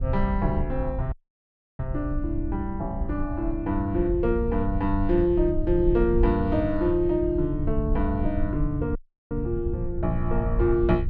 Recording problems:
low-frequency rumble; below 84 Hz, SNR 5 dB
dropout; at 1 s for 0.5 s and at 9 s

